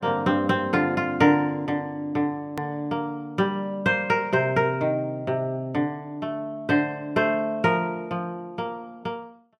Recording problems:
edit click; at 2.5 s

